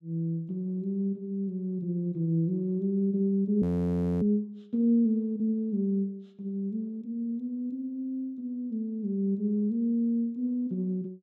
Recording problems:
frozen audio; at 3.5 s for 0.5 s

